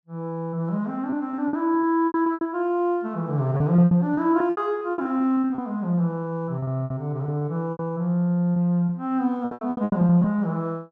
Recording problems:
lost packets; 14% of the sound replaced, filled with repeated pitch periods

